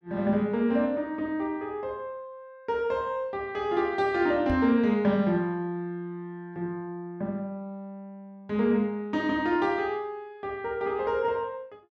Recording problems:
microphone thump; at 4.5 s; peak -2 dB vs average level

